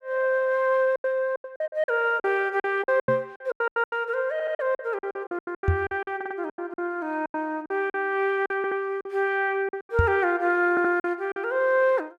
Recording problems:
packet loss; 15% of the sound replaced, filled with silence
microphone thump; at 3 s, at 5.5 s and at 10 s; peak +6 dB vs average level
stutter; 4 times, first at 4.5 s

